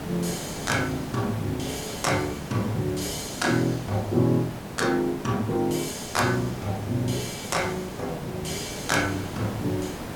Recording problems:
hiss; slope -6 dB per octave, SNR 9 dB

